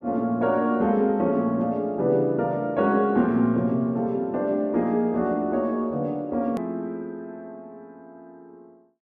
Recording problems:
click at an edit; at 6.5 s

